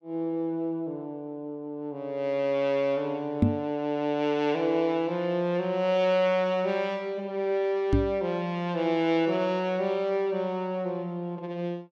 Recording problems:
knock on the microphone; at 3.5 s and at 8 s; peak +9 dB vs average level

